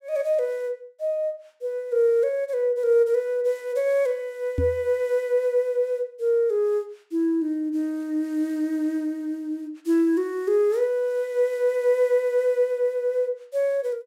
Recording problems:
knock on the microphone; at 4.5 s; peak +2 dB vs average level

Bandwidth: 16 kHz